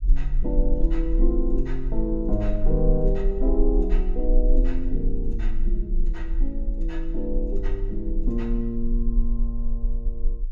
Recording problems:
rumble; below 36 Hz, strongest tone 24 Hz, SNR -2 dB

